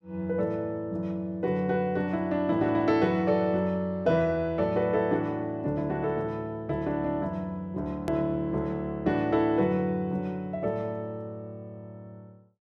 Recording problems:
click at an edit; at 8 s

